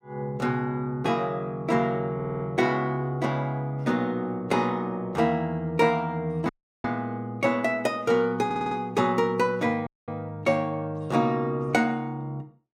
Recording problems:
stutter; at 2 s and at 8.5 s
audio cutting out; at 6.5 s and at 10 s

